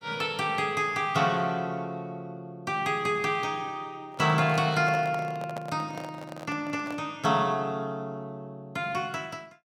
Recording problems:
handling noise; from 4 to 7 s; peak -5 dB vs average level

